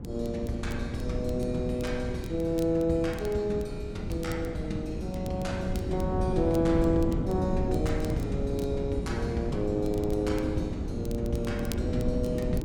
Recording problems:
wind noise; below 250 Hz, SNR 3 dB
crackle; vinyl, SNR 21 dB

